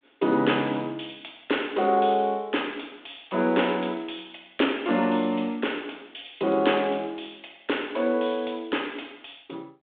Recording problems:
phone line; 190 Hz to 3.6 kHz, G.726

